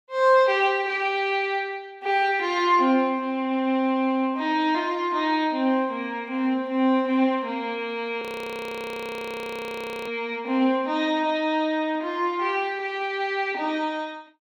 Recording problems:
frozen audio; at 8 s for 2 s

